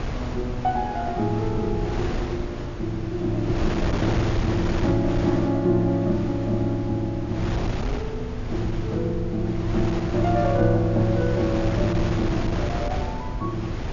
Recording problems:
low-pass filter; nothing above 7.1 kHz
low-frequency rumble; below 100 Hz, SNR 12 dB
wind noise; below 500 Hz, SNR 6 dB

